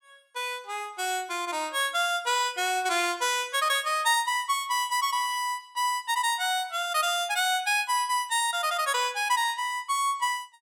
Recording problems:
none

